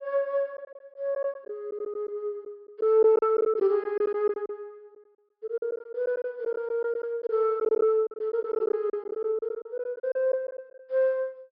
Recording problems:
treble cut off; nothing above 5.2 kHz
lost packets; 11% of the sound replaced, filled with silence

